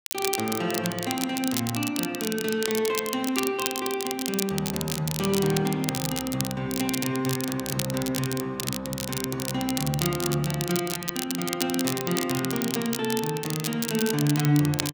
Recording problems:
crackling; vinyl, SNR 4 dB

